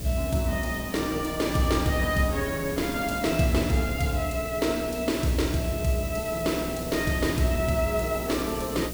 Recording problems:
electrical hum; 60 Hz, harmonics up to 720 Hz, SNR 13 dB
hiss; slope +3 dB per octave, SNR 12 dB
wind on the microphone; below 230 Hz, SNR 18 dB

